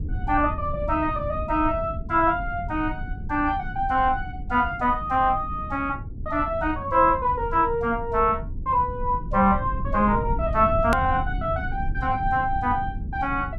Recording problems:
low-frequency rumble; below 120 Hz, SNR 9 dB
edit click; at 11 s

